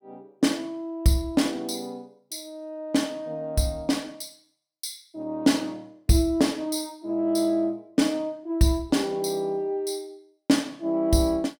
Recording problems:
none

